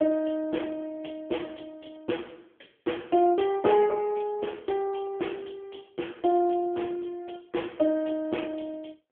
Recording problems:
phone line; 260 Hz to 3.3 kHz, AMR-NB

